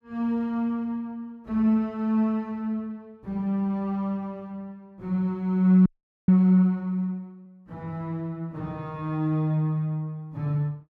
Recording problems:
frozen audio; at 6 s

